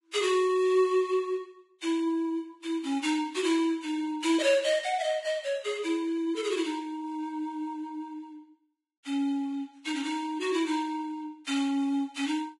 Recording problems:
lossy compression; Vorbis, log-spectral distance 3 dB, nothing above 10.7 kHz

